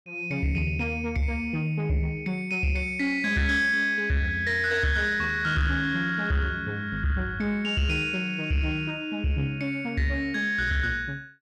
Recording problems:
distortion; soft clipping, signal-to-distortion ratio 12 dB

